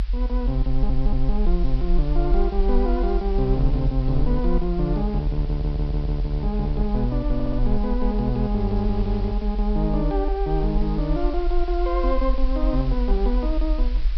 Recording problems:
treble cut off; nothing above 5.5 kHz
hiss; SNR 21 dB
low-frequency rumble; below 46 Hz, SNR 1 dB
audio stuttering; at 0.5 s, at 5.5 s and at 7.5 s

